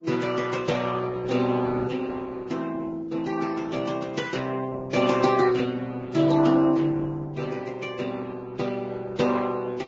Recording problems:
lossy compression; Opus, then Vorbis, log-spectral distance 4 dB, nothing above 7.3 kHz

